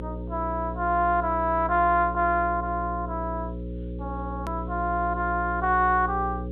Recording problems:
treble missing; nothing above 4 kHz
electrical hum; 60 Hz, harmonics up to 540 Hz, SNR 9 dB
hiss; SNR 43 dB
edit click; at 4.5 s

